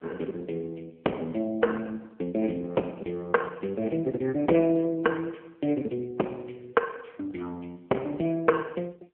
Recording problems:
telephone audio; 260 Hz to 3.6 kHz, AMR-NB

